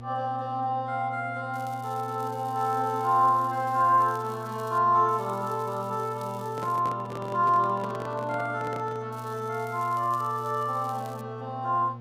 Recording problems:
mains hum; 60 Hz, harmonics up to 960 Hz, SNR 14 dB
crackling; from 1.5 to 5 s, from 5 to 7 s and from 9 to 11 s; loose cable, SNR 25 dB
handling noise; from 6.5 to 9 s; peak -8 dB vs average level

